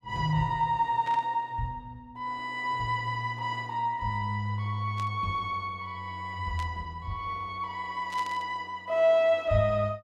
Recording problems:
static burst; 4 times, first at 1 s; peak -10 dB vs average level

